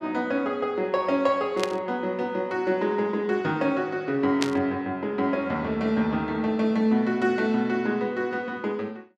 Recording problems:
burst of static; at 1.5 s and at 4.5 s; peak +2 dB vs average level

